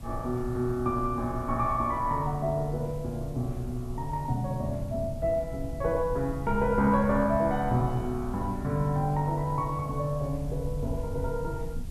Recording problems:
hiss; SNR 25 dB
rumble; below 98 Hz, SNR 11 dB

